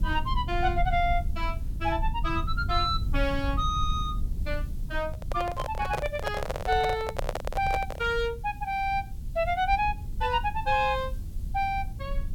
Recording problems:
hiss; slope 0 dB per octave, SNR 29 dB
rumble; below 76 Hz, SNR 6 dB
handling noise; from 5 to 8 s; peak +3 dB vs average level

